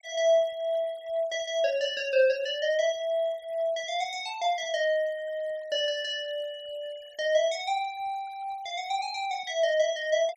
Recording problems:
noise reduction artefacts; signal-to-artefact ratio 24 dB

